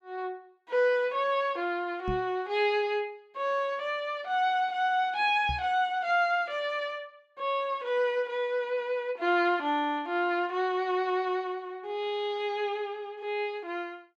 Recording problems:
microphone bump; at 2 s and at 5.5 s; peak -2 dB vs average level

